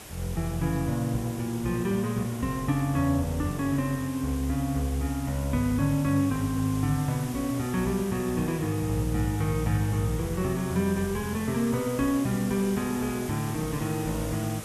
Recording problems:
background hiss; slope -3 dB per octave, SNR 13 dB

